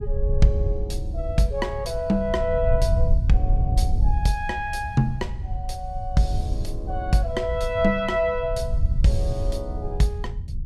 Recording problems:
rumble; below 78 Hz, SNR 2 dB

